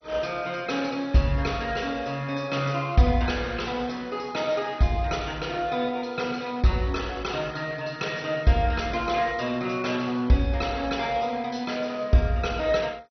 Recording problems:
lossy compression; MP2, log-spectral distance 4 dB, nothing above 6 kHz

